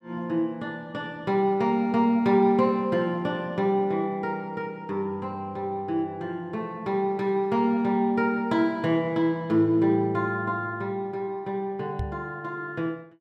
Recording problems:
knock on the microphone; at 12 s; peak -2 dB vs average level

